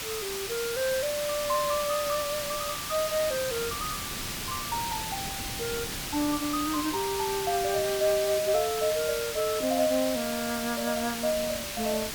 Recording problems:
hiss; slope +1 dB per octave, SNR 3 dB
wind noise; below 340 Hz, SNR 17 dB

